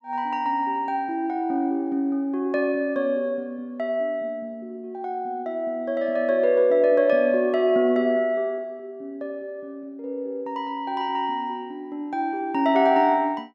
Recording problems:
none

